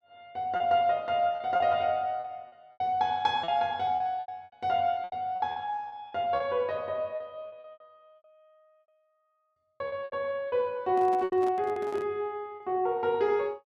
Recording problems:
packet loss; 11% of the sound replaced, filled with repeated pitch periods
handling noise; from 11 to 12 s; peak -10 dB vs average level

